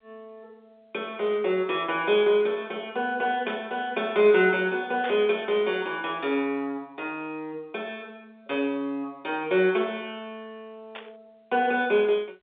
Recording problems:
telephone audio; 320 Hz to 3.7 kHz, G.711
static burst; at 3.5 s, at 5 s and at 11 s; peak -7 dB vs average level

